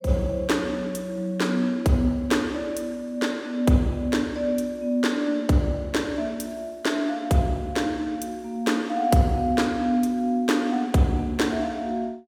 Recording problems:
none

